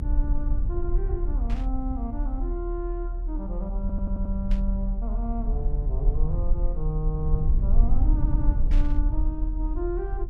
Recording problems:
rumble; below 46 Hz, SNR -7 dB
static burst; at 1.5 s, at 4.5 s and at 8.5 s; peak -6 dB vs average level
audio stuttering; at 4 s and at 8 s

